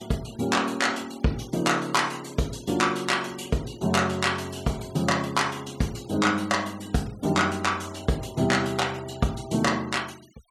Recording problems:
noise reduction artefacts; signal-to-artefact ratio 22 dB

